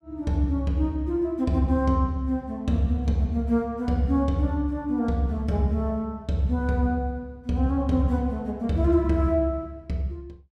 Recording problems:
none

